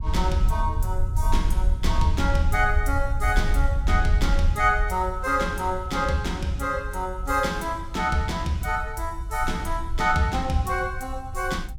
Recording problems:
wind on the microphone; below 68 Hz, SNR 3 dB

